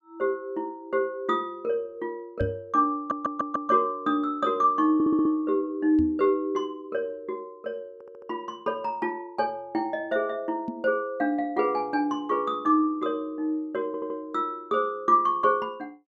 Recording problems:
microphone bump; at 2.5 s, at 6 s and at 11 s; peak 0 dB vs average level
audio stuttering; 4 times, first at 3 s

